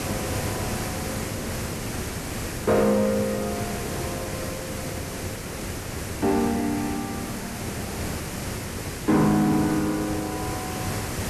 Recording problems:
distorted audio; soft clipping, signal-to-distortion ratio 11 dB
hiss; slope -4 dB per octave, SNR 5 dB
hard cut with a click; at 8.5 s

